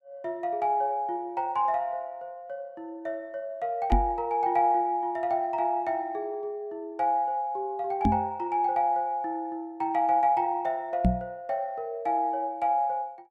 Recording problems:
microphone thump; at 4 s, at 8 s and at 11 s; peak +8 dB vs average level

